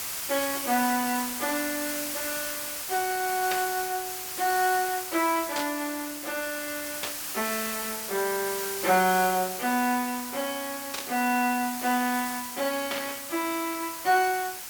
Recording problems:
hiss; slope +1 dB per octave, SNR 4 dB
static burst; 5 times, first at 3.5 s; peak 0 dB vs average level

